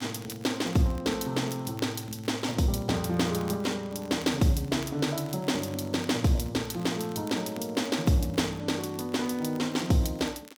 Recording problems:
crackle; vinyl, SNR 23 dB

